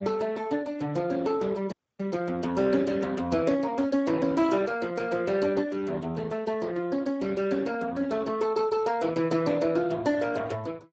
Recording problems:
lossy codec; Speex, log-spectral distance 4 dB
audio cutting out; at 1.5 s

